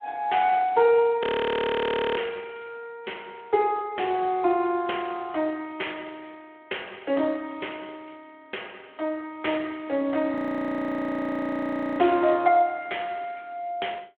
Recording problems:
telephone audio; 280 Hz to 3.3 kHz, Speex
audio freezing; at 1 s for 1 s and at 10 s for 1.5 s

